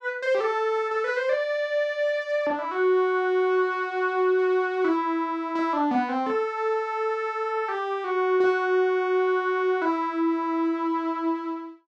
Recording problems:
none

